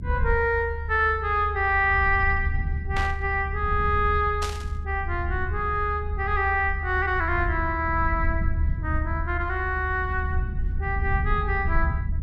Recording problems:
low-frequency rumble; below 78 Hz, SNR 5 dB
burst of static; at 3 s and at 4.5 s; peak -3 dB vs average level

